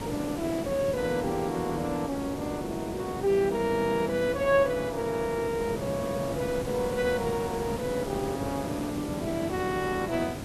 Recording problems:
hiss; slope -6 dB per octave, SNR 8 dB

